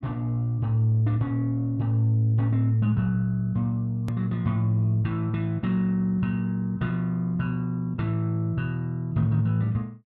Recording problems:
click at an edit; at 4 s

